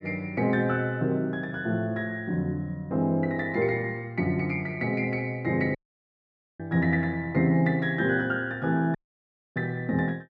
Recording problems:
dropout; at 6 s for 1 s and at 9 s for 0.5 s

